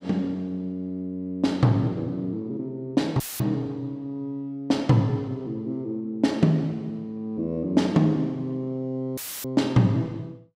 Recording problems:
dropout; at 3 s and at 9 s; filled with static

